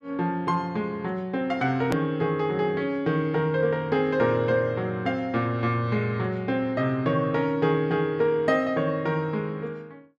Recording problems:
hard cut with a click; at 2 s

